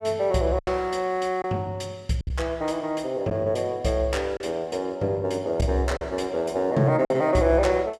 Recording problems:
lost packets; 4% of the sound replaced, filled with silence

